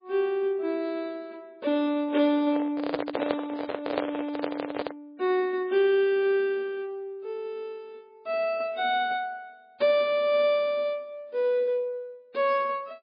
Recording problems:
lossy codec; MP3, log-spectral distance 2 dB, nothing above 4.8 kHz
microphone handling noise; from 2.5 to 5 s; peak +3 dB vs average level

